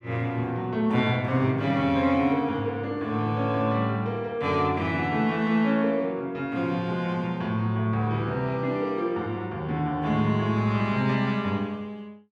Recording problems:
none

